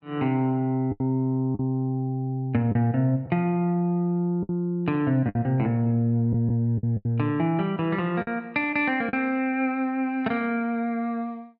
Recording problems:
lost packets; 5% of the sound replaced, filled with the last packet

